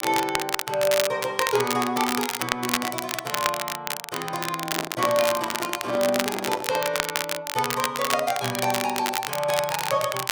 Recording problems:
crackling; vinyl, SNR 2 dB
microphone handling noise; from 4.5 to 7 s; peak -1 dB vs average level

